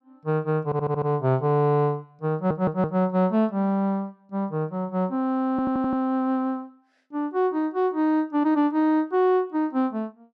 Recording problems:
stutter; at 0.5 s, at 2.5 s and at 5.5 s

